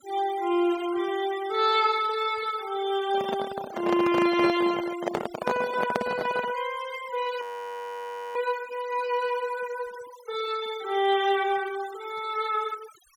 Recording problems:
noise reduction artefacts; signal-to-artefact ratio 16 dB
microphone handling noise; from 3 to 6.5 s; peak +4 dB vs average level
frozen audio; at 7.5 s for 1 s

